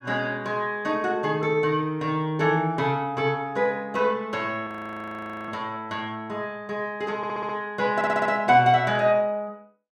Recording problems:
audio freezing; at 4.5 s for 1 s
stutter; at 7 s and at 8 s

